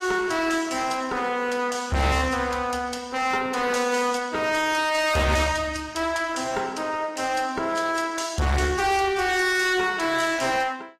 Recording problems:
lossy codec; AAC, log-spectral distance 4 dB, nothing above 14.3 kHz
distortion; hard clipping, uneven, signal-to-distortion ratio 7 dB

